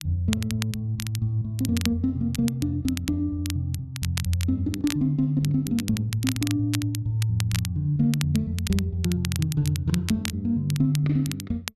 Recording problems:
crackle; vinyl, SNR 11 dB

